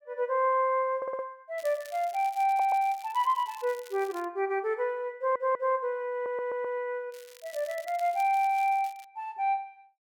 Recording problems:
stutter; 4 times, first at 1 s
crackle; from 1.5 to 4.5 s and from 7 to 9 s; loose cable, SNR 22 dB

